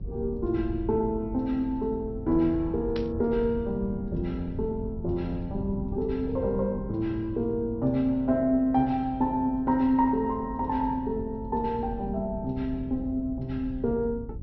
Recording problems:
low-pass filter; nothing above 5.7 kHz
hum; 60 Hz, harmonics up to 540 Hz, SNR 22 dB
low-frequency rumble; below 130 Hz, SNR 12 dB
burst of static; at 3 s; peak -8 dB vs average level

